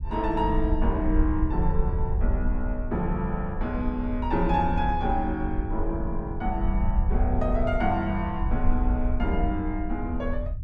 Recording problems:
low-frequency rumble; below 66 Hz, SNR 2 dB

